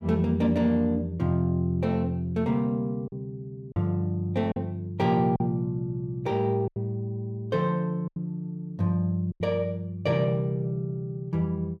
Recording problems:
lost packets; 3% of the sound replaced, filled with silence

